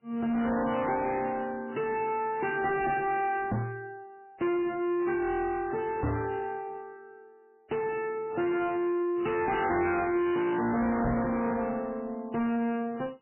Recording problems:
lossy compression; MP3, log-spectral distance 3 dB, nothing above 2.5 kHz
distorted audio; soft clipping, signal-to-distortion ratio 6 dB
microphone thump; at 3.5 s, at 6 s and at 11 s; peak +6 dB vs average level

